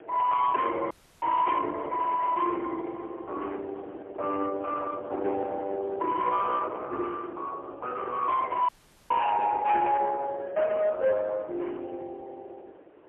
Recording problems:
phone line; 300 Hz to 3.4 kHz, AMR-NB, then MP3
distorted audio; soft clipping, signal-to-distortion ratio 11 dB
wind on the microphone; below 700 Hz, SNR 18 dB
audio cutting out; at 1 s and at 8.5 s

